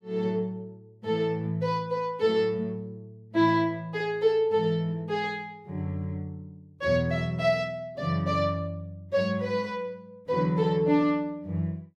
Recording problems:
none

